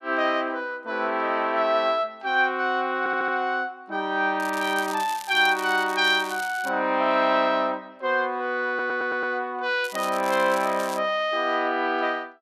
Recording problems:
stutter; at 3 s and at 8.5 s
crackling; from 4.5 to 6.5 s and from 10 to 11 s; loose cable, SNR 16 dB

